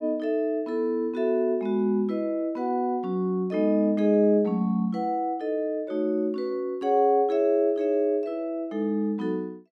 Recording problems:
none

